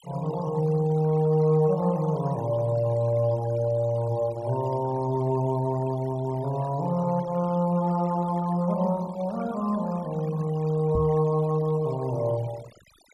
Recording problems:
denoising artefacts; signal-to-artefact ratio 21 dB
knock on the microphone; at 11 s; peak +1 dB vs average level

